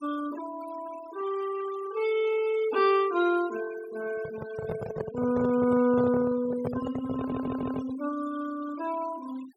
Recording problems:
denoising artefacts; signal-to-artefact ratio 16 dB
handling noise; from 4 to 8 s; peak 0 dB vs average level
stutter; at 7 s

